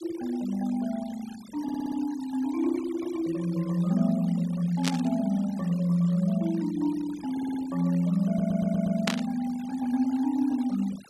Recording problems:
noise reduction artefacts; signal-to-artefact ratio 21 dB
stutter; at 1.5 s, at 7.5 s and at 8.5 s
burst of static; at 5 s and at 9 s; peak +4 dB vs average level

